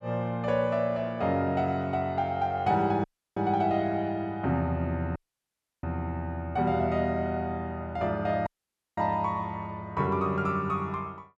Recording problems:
dropout; at 3 s, at 5 s for 0.5 s and at 8.5 s for 0.5 s

